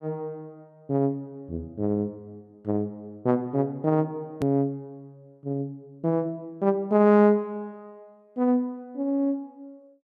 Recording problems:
hard cut with a click; at 4.5 s

